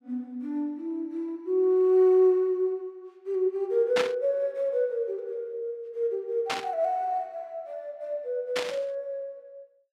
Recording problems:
static burst; at 4 s, at 6.5 s and at 8.5 s; peak +2 dB vs average level

